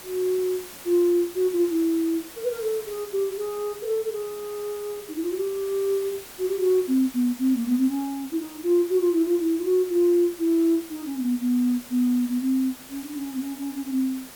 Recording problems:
hiss; slope -2 dB per octave, SNR 16 dB

